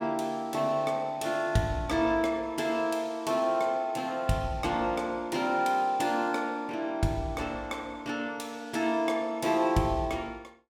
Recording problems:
none

